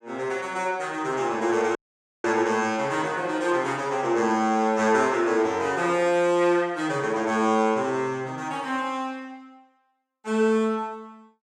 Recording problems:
audio cutting out; at 2 s

